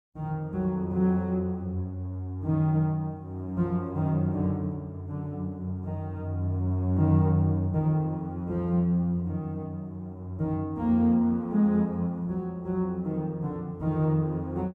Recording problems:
none

